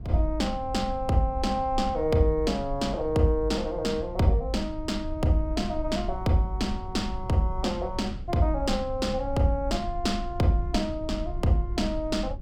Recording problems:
low-frequency rumble; below 74 Hz, SNR 11 dB

